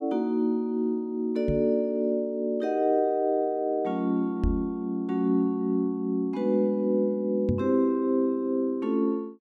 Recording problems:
knock on the microphone; at 1.5 s, at 4.5 s and at 7.5 s; peak +2 dB vs average level

